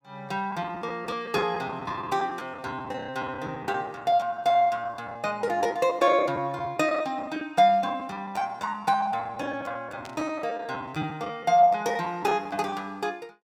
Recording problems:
packet loss; 13% of the sound replaced, filled with the last packet
burst of static; at 10 s; peak -12 dB vs average level

